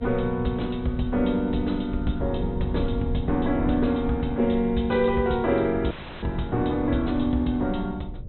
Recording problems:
treble missing; nothing above 4 kHz
electrical hum; 50 Hz, harmonics up to 600 Hz, SNR 27 dB
rumble; below 100 Hz, SNR 11 dB
wind on the microphone; below 490 Hz, SNR 24 dB
audio cutting out; at 6 s

